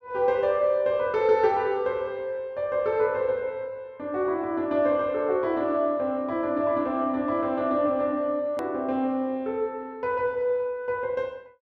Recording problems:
click at an edit; at 8.5 s

